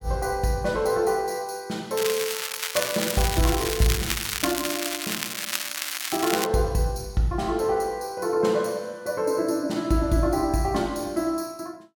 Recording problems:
crackling; from 2 to 6.5 s; loose cable, SNR 2 dB

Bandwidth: 17.5 kHz